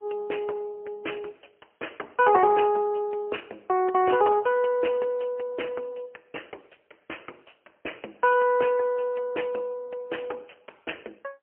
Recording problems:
telephone audio; 320 Hz to 3.1 kHz, AMR-NB, then MP3

